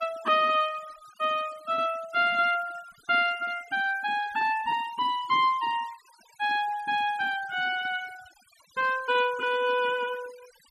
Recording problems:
noise reduction artefacts; signal-to-artefact ratio 21 dB

